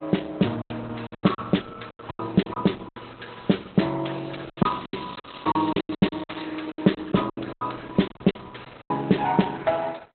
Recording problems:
codec artefacts; Opus, log-spectral distance 9 dB, nothing above 4 kHz
packet loss; 15% of the sound replaced, filled with silence
crackle; from 4.5 to 6.5 s; loose cable, SNR 18 dB

